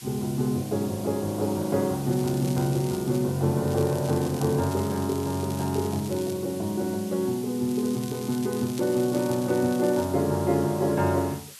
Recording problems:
hiss; slope +3 dB per octave, SNR 16 dB
crackle; from 2 to 3 s, from 3.5 to 6.5 s and from 7.5 to 10 s; loose cable, SNR 18 dB

